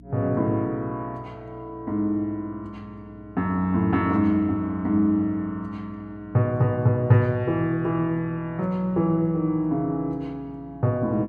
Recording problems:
mains hum; 60 Hz, harmonics up to 300 Hz, SNR 24 dB

